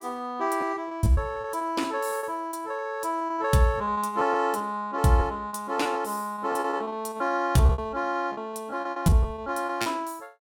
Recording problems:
lost packets; 15% of the sound replaced, filled with repeated pitch periods

